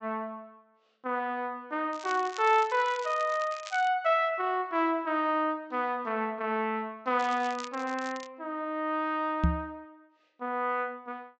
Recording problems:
treble cut off; nothing above 8 kHz
crackle; from 2 to 4 s and from 7 to 8.5 s; loose cable, SNR 17 dB
microphone bump; at 9.5 s; peak +7 dB vs average level

